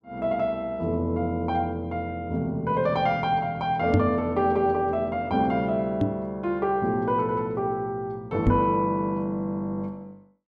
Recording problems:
knock on the microphone; at 4 s, at 6 s and at 8.5 s; peak +7 dB vs average level

